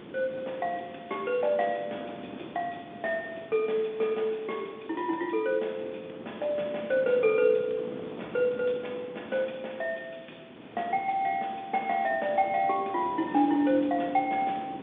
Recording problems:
phone line; 240 Hz to 3.6 kHz, G.711
background hiss; SNR 26 dB
wind noise; below 540 Hz, SNR 15 dB

